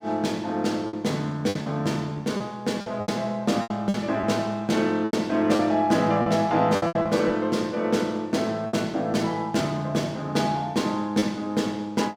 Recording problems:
lost packets; 8% of the sound replaced, filled with repeated pitch periods

